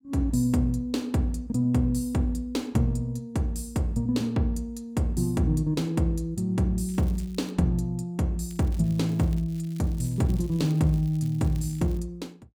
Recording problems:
crackling; at 7 s and from 8.5 to 12 s; loose cable, SNR 26 dB

